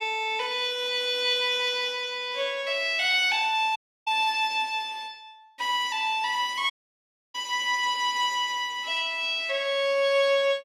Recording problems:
audio cutting out; at 4 s and at 6.5 s for 0.5 s

